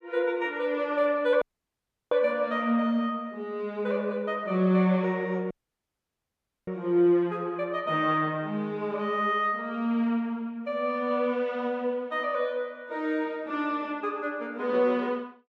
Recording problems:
dropout; at 1.5 s for 0.5 s and at 5.5 s for 1 s

